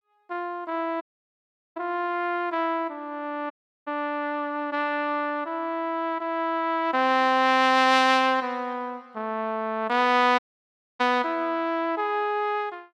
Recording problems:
dropout; at 1 s for 1 s, at 3.5 s and at 10 s for 0.5 s

